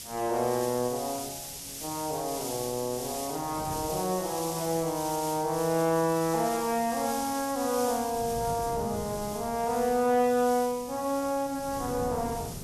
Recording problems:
background hiss; slope +6 dB per octave, SNR 9 dB
wind on the microphone; below 370 Hz, SNR 17 dB

